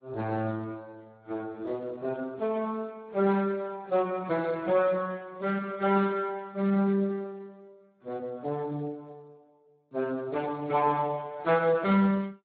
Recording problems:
lossy codec; AAC, then Speex, log-spectral distance 3 dB

